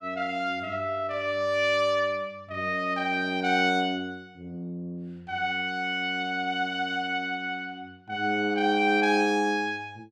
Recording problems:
none

